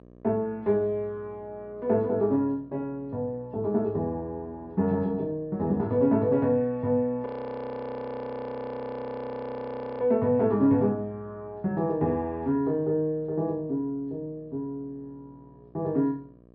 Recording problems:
treble cut off; nothing above 5.5 kHz
hum; 60 Hz, harmonics up to 1.3 kHz, SNR 25 dB
frozen audio; at 7.5 s for 3 s

